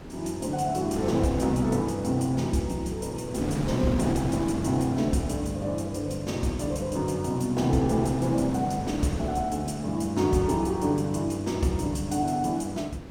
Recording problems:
wind on the microphone; below 440 Hz, SNR 10 dB

